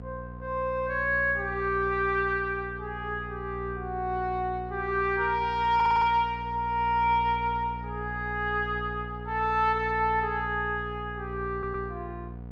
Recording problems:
mains hum; 60 Hz, harmonics up to 960 Hz, SNR 12 dB
audio stuttering; at 6 s and at 12 s

